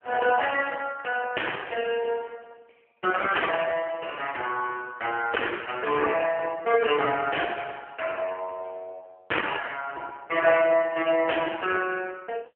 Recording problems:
telephone audio; 300 Hz to 2.8 kHz, AMR-NB

